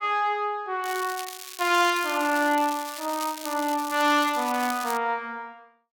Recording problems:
crackle; from 1 to 5 s; loose cable, SNR 12 dB

